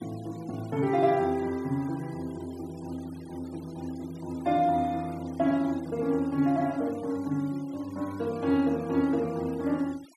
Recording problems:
denoising artefacts; signal-to-artefact ratio 23 dB

